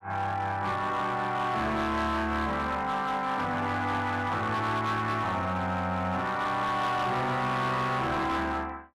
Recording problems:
distorted audio; hard clipping, uneven, signal-to-distortion ratio 10 dB

